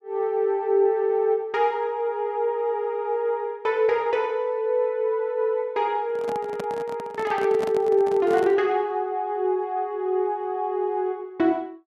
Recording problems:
microphone handling noise; from 6 to 8.5 s; peak -6 dB vs average level

